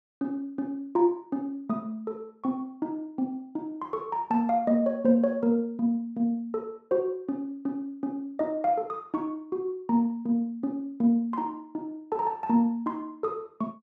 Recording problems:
none

